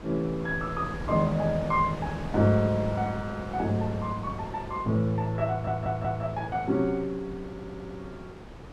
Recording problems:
wind noise; below 660 Hz, SNR 11 dB
stutter; at 5.5 s and at 7.5 s

